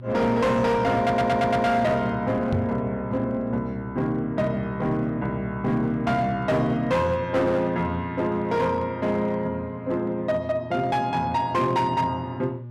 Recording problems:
distorted audio; hard clipping, signal-to-distortion ratio 11 dB
electrical hum; 60 Hz, harmonics up to 600 Hz, SNR 15 dB
audio stuttering; at 1 s
microphone bump; at 2.5 s; peak +2 dB vs average level

